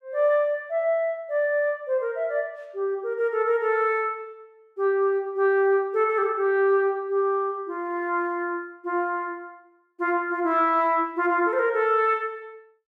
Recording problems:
none

